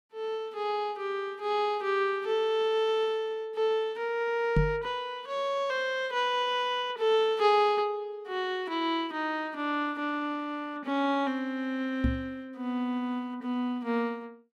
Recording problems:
microphone thump; at 4.5 s and at 12 s; peak +7 dB vs average level

